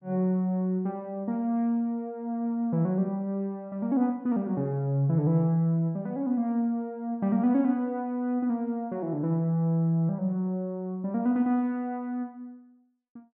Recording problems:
none

